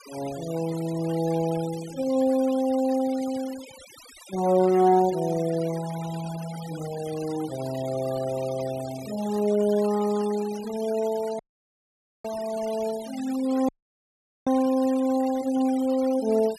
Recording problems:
denoising artefacts; signal-to-artefact ratio 18 dB
dropout; at 11 s for 1 s and at 14 s for 1 s

